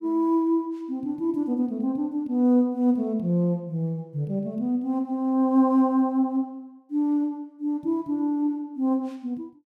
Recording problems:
none

